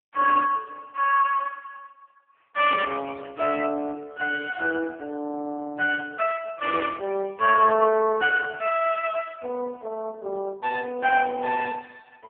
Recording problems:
telephone audio; 260 Hz to 3.3 kHz, AMR-NB

